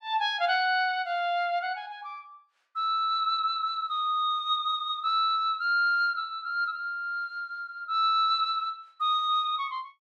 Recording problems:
none

